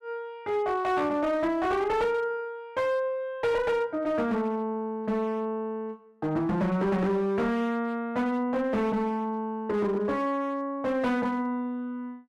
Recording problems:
distorted audio; hard clipping, uneven, signal-to-distortion ratio 10 dB

